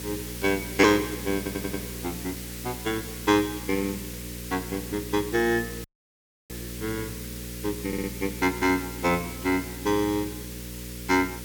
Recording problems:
hum; 60 Hz, harmonics up to 540 Hz, SNR 12 dB
background hiss; slope +3 dB per octave, SNR 11 dB
audio stuttering; at 1.5 s and at 8 s
audio cutting out; at 6 s for 0.5 s

